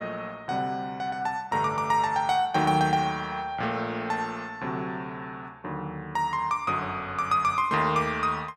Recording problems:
none

